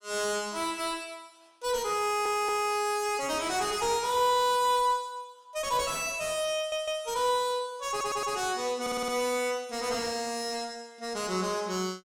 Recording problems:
distorted audio; soft clipping, signal-to-distortion ratio 8 dB
stutter; 4 times, first at 2 s

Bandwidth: 16.5 kHz